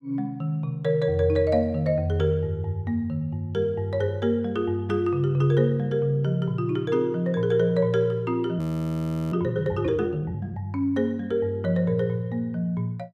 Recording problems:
frozen audio; at 8.5 s for 0.5 s

